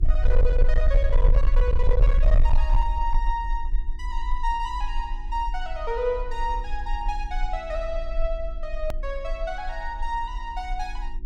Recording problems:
distortion; hard clipping, signal-to-distortion ratio 11 dB
hum; 60 Hz, harmonics up to 360 Hz, SNR 21 dB
low-frequency rumble; below 42 Hz, SNR -3 dB
edit click; at 9 s

